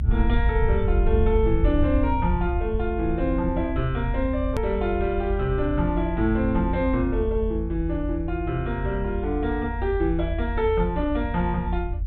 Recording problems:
low-pass filter; nothing above 4 kHz
rumble; below 78 Hz, SNR 3 dB
hard cut with a click; at 4.5 s

